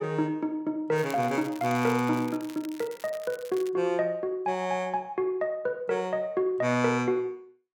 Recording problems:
crackle; from 1 to 3.5 s; loose cable, SNR 19 dB

